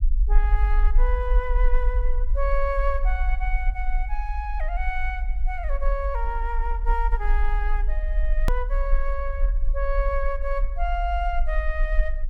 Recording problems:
low-frequency rumble; below 44 Hz, SNR -4 dB
hard cut with a click; at 8.5 s

